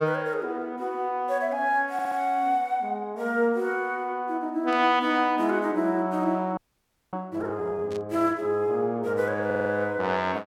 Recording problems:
audio stuttering; at 2 s and at 9.5 s
static burst; at 4.5 s and at 8 s; peak -15 dB vs average level
frozen audio; at 6.5 s for 0.5 s

